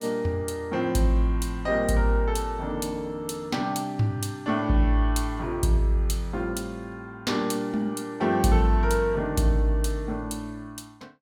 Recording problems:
none

